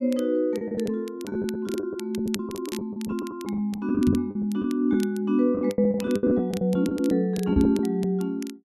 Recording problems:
crackle; vinyl, SNR 19 dB
packet loss; 14% of the sound replaced, filled with the last packet
knock on the microphone; at 4 s and at 7.5 s; peak +4 dB vs average level

